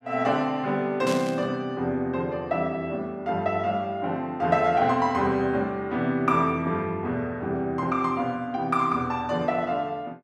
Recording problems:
burst of static; at 1 s; peak -5 dB vs average level

